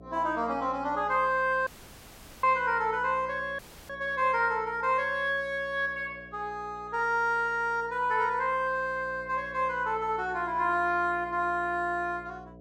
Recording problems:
hum; 60 Hz, harmonics up to 720 Hz, SNR 22 dB
dropout; at 1.5 s for 1 s and at 3.5 s

